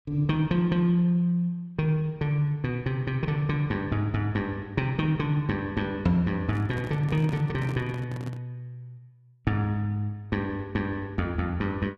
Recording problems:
microphone handling noise; from 6.5 to 8.5 s; peak -5 dB vs average level

